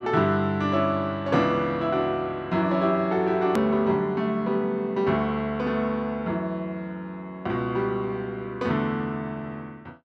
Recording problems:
edit click; at 3.5 s

